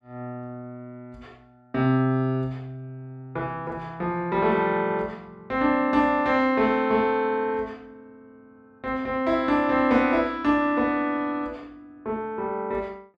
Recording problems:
none

